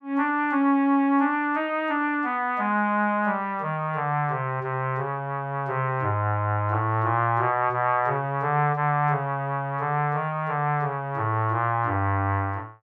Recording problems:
none

